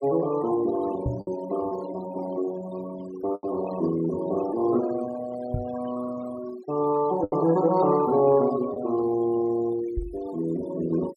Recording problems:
noise reduction artefacts; signal-to-artefact ratio 16 dB
lost packets; 2% of the sound replaced, filled with the last packet
microphone thump; at 1 s, at 5.5 s and at 10 s; peak +1 dB vs average level

